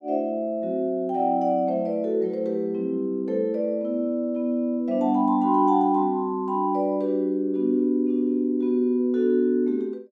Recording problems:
none

